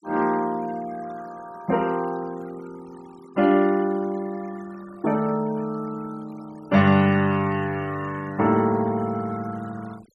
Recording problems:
noise reduction artefacts; signal-to-artefact ratio 23 dB

